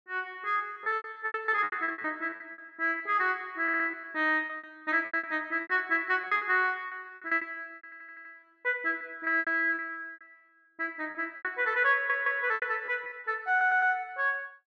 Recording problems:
lost packets; 17% of the sound replaced, filled with repeated pitch periods
stutter; 4 times, first at 3.5 s

